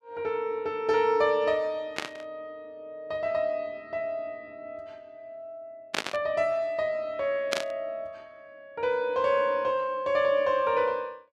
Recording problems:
static burst; at 2 s, at 6 s and at 7.5 s; peak +4 dB vs average level

